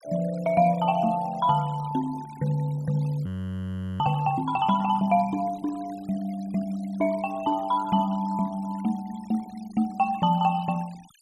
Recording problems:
denoising artefacts; signal-to-artefact ratio 23 dB
frozen audio; at 3.5 s for 0.5 s

